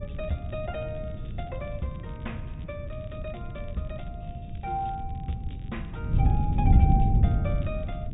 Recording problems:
treble missing; nothing above 4 kHz
wind on the microphone; below 130 Hz, SNR -7 dB
crackling; vinyl, SNR 24 dB

